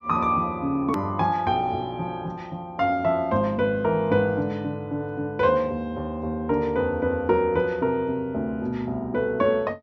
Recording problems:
low-pass filter; nothing above 8 kHz
edit click; at 1 s

